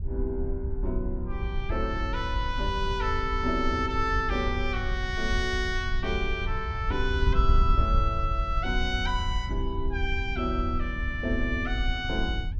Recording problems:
wind noise; below 68 Hz, SNR 2 dB

